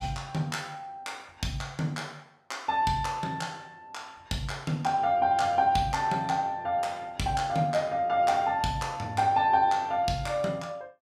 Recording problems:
none

